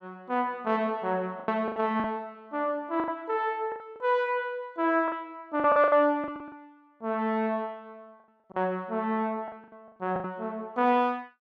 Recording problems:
lost packets; 9% of the sound replaced, filled with the last packet

